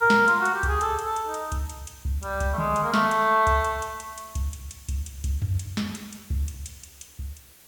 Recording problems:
background hiss; slope -1 dB per octave, SNR 23 dB

